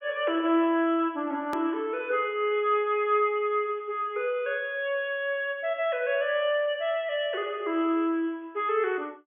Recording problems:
low-pass filter; nothing above 3.4 kHz
click at an edit; at 1.5 s

